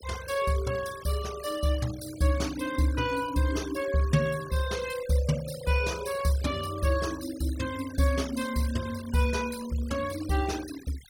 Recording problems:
noise reduction artefacts; signal-to-artefact ratio 15 dB

